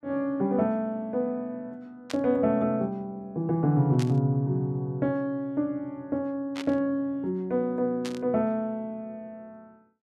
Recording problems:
static burst; 4 times, first at 2 s; peak -5 dB vs average level

